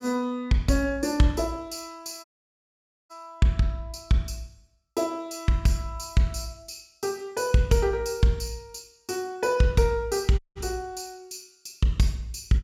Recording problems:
dropout; at 2 s for 1 s and at 10 s

